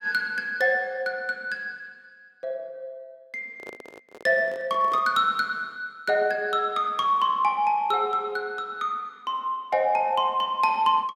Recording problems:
handling noise; from 3.5 to 5 s; peak -12 dB vs average level

